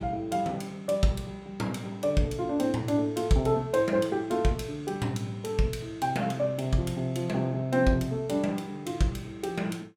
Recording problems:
none

